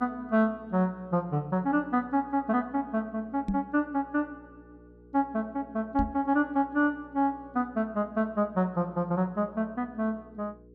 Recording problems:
hum; 60 Hz, harmonics up to 480 Hz, SNR 25 dB
knock on the microphone; at 3.5 s and at 6 s; peak +3 dB vs average level

